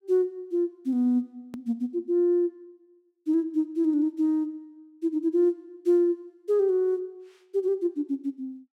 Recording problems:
click at an edit; at 1.5 s

